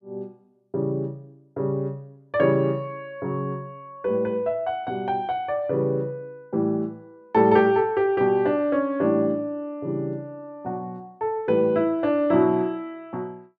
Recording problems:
none

